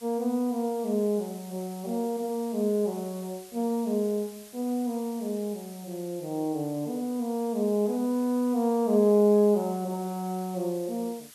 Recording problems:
background hiss; slope +2 dB per octave, SNR 20 dB

